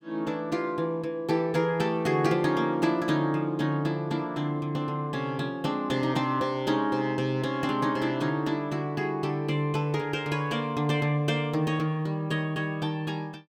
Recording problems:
none

